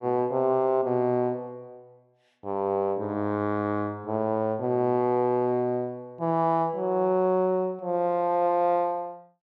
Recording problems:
none

